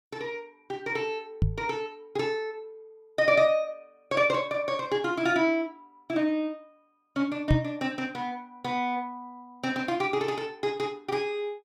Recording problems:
microphone bump; at 1.5 s and at 7.5 s; peak +8 dB vs average level

